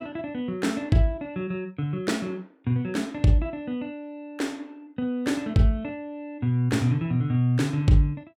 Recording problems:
none

